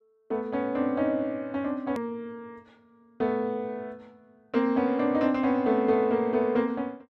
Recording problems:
edit click; at 2 s

